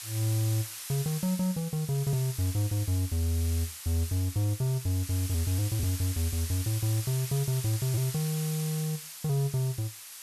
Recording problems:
background hiss; slope +4 dB per octave, SNR 8 dB

